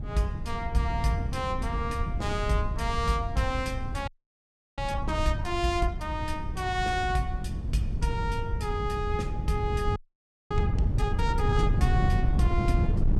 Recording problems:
wind noise; below 120 Hz, SNR 1 dB
audio freezing; at 4 s for 0.5 s and at 10 s for 0.5 s

